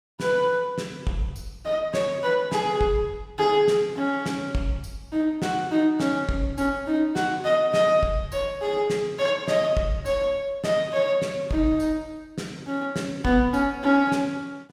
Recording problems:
none

